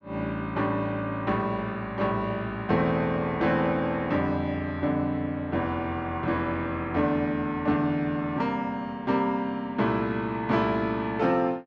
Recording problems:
none

